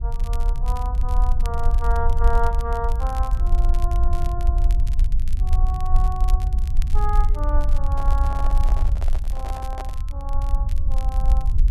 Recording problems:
rumble; below 54 Hz, SNR -9 dB
crackling; vinyl, SNR 15 dB
microphone handling noise; from 8 to 10 s; peak +1 dB vs average level

